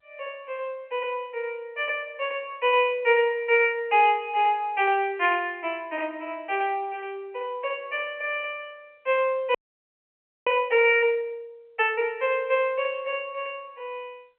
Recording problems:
phone line; 260 Hz to 3.1 kHz, G.711
audio freezing; at 9.5 s for 1 s

